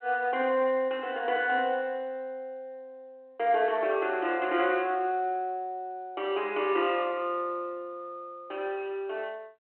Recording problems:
phone line; 220 Hz to 3.1 kHz, G.726

